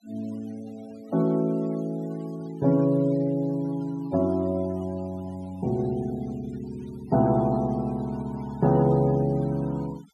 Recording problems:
denoising artefacts; signal-to-artefact ratio 24 dB

